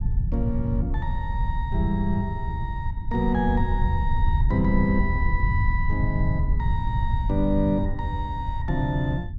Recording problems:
low-frequency rumble; below 94 Hz, SNR 0 dB

